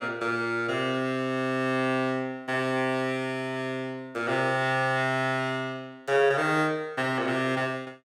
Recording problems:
none

